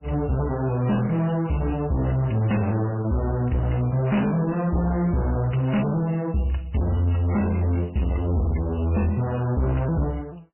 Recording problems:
lossy compression; MP3, log-spectral distance 6 dB, nothing above 2.9 kHz
distortion; hard clipping, uneven, signal-to-distortion ratio 6 dB

